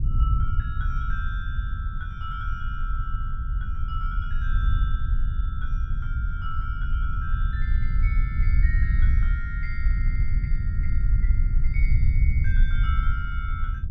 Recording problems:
low-frequency rumble; below 68 Hz, SNR -11 dB

